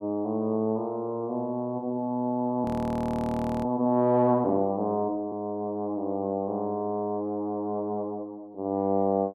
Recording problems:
frozen audio; at 2.5 s for 1 s

